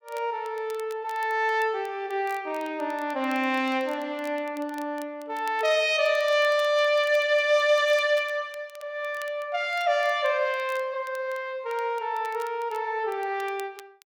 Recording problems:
crackling; vinyl, SNR 25 dB

